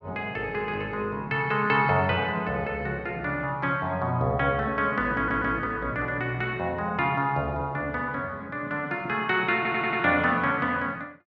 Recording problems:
audio stuttering; at 5 s and at 9.5 s

